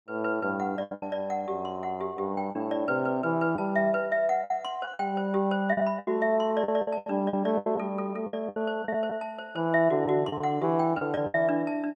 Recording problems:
lost packets; 10% of the sound replaced, filled with the last packet

